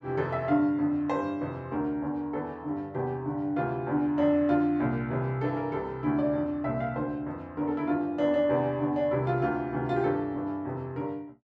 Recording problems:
none

